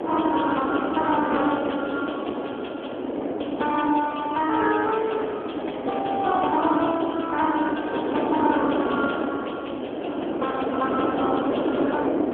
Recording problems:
phone line; 240 Hz to 3.4 kHz, AMR-NB
wind noise; below 620 Hz, SNR 3 dB

